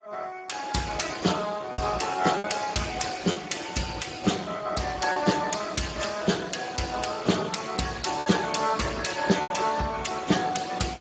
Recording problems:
lossy compression; AAC, then Speex, log-spectral distance 6 dB, nothing above 7.6 kHz
lost packets; 3% of the sound replaced, filled with repeated pitch periods

